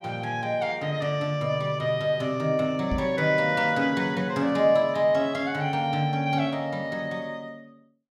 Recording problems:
knock on the microphone; at 3 s; peak -1 dB vs average level

